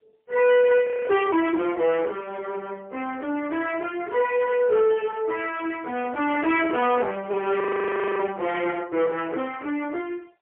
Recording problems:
telephone audio; 300 Hz to 3.2 kHz, AMR-NB, then MP3
distortion; soft clipping, signal-to-distortion ratio 11 dB
audio freezing; at 1 s and at 7.5 s for 0.5 s

